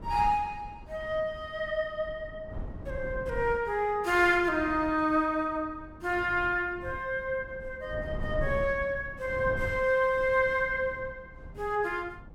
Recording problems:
wind noise; below 180 Hz, SNR 15 dB

